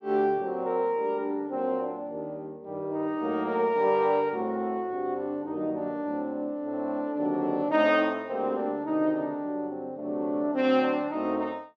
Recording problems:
none

